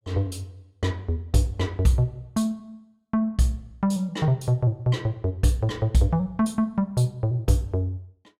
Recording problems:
none

